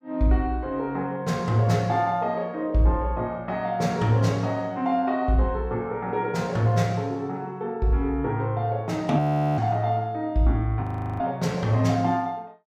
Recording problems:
audio freezing; at 9 s and at 11 s

